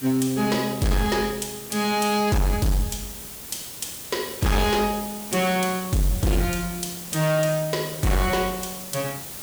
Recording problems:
distorted audio; hard clipping, signal-to-distortion ratio 6 dB
background hiss; slope -2 dB per octave, SNR 10 dB

